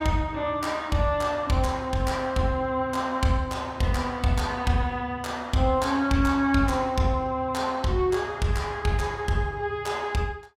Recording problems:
none

